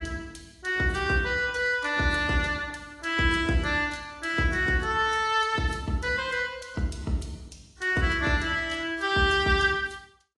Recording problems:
codec artefacts; AAC, log-spectral distance 3 dB, nothing above 10.7 kHz

